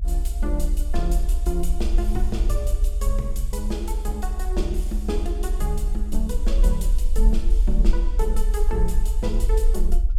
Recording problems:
low-frequency rumble; below 44 Hz, SNR -6 dB

